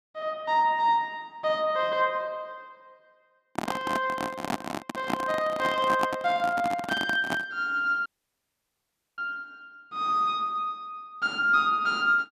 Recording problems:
microphone handling noise; from 3.5 to 7.5 s; peak +3 dB vs average level
audio cutting out; at 8 s for 1 s

